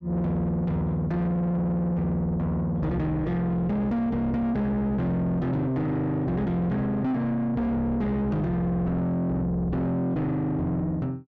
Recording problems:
distorted audio; soft clipping, signal-to-distortion ratio 8 dB

